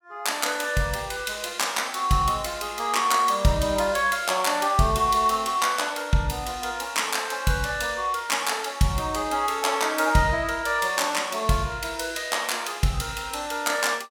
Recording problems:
none

